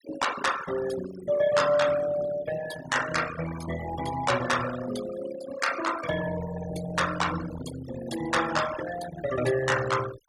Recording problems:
denoising artefacts; signal-to-artefact ratio 10 dB

